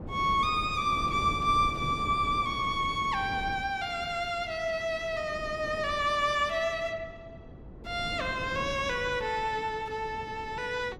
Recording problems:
wind on the microphone; below 350 Hz, SNR 13 dB

